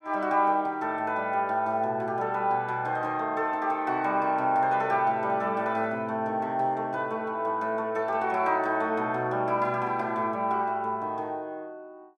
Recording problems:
none

